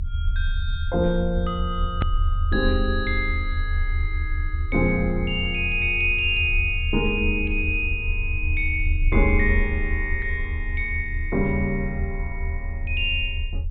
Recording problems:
treble missing; nothing above 4 kHz
rumble; below 80 Hz, strongest tone 32 Hz, SNR 3 dB
click at an edit; at 2 s

